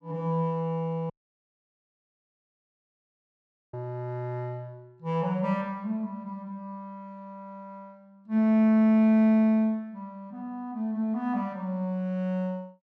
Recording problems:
dropout; at 1 s for 2.5 s

